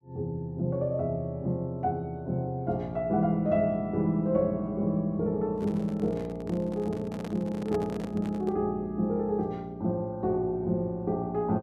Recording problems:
microphone handling noise; from 5.5 to 8.5 s; peak -4 dB vs average level

